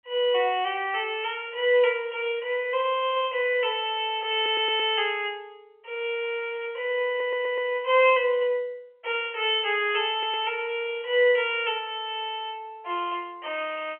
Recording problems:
phone line; 320 Hz to 3.3 kHz, G.711
audio stuttering; at 4.5 s, at 7 s and at 10 s

